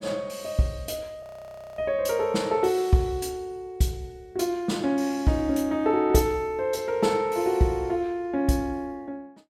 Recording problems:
frozen audio; at 1 s for 0.5 s

